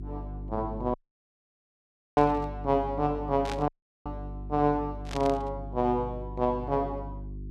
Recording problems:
electrical hum; 50 Hz, harmonics up to 400 Hz, SNR 11 dB
dropout; at 1 s for 1 s and at 3.5 s
burst of static; at 2 s, at 3.5 s and at 5 s; peak -5 dB vs average level

